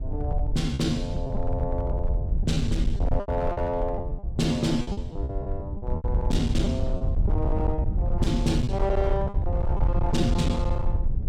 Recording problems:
distorted audio; hard clipping, uneven, signal-to-distortion ratio 12 dB
low-frequency rumble; below 92 Hz, SNR -1 dB
packet loss; 9% of the sound replaced, filled with repeated pitch periods

